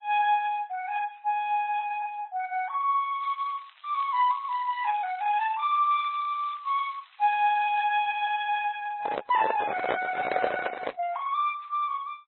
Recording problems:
lossy codec; Opus, then MP3, log-spectral distance 4 dB, nothing above 3.4 kHz
crackle; from 3 to 8 s; loose cable, SNR 26 dB
handling noise; from 9 to 11 s; peak +3 dB vs average level

